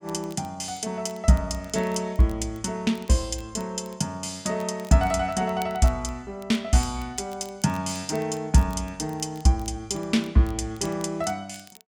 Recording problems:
crackle; vinyl, SNR 25 dB

